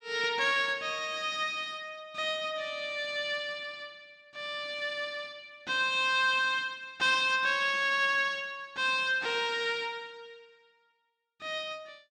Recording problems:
none

